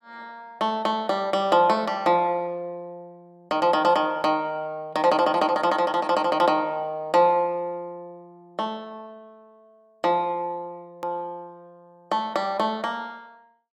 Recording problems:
hard cut with a click; at 11 s

